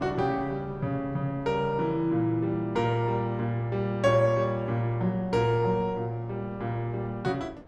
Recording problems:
wind noise; below 520 Hz, SNR 21 dB

